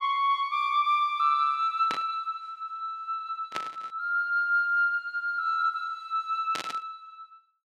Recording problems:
static burst; at 2 s, at 3.5 s and at 6.5 s; peak -2 dB vs average level

